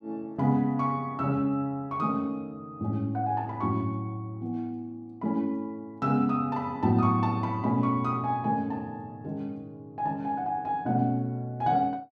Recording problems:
none

